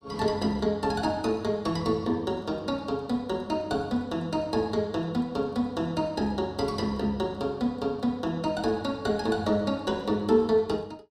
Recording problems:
none

